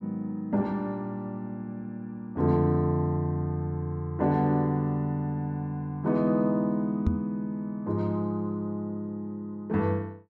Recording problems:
microphone bump; at 7 s; peak +7 dB vs average level

